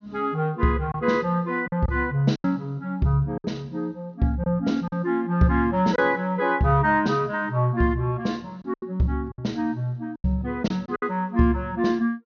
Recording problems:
treble cut off; nothing above 6.6 kHz
lost packets; 5% of the sound replaced, filled with silence

